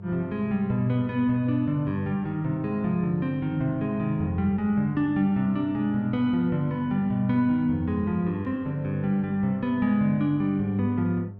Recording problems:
mains hum; 50 Hz, harmonics up to 900 Hz, SNR 17 dB

